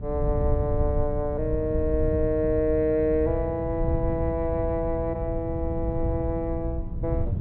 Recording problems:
treble missing; nothing above 4.1 kHz
electrical hum; 60 Hz, harmonics up to 420 Hz, SNR 10 dB
wind noise; below 100 Hz, SNR 4 dB

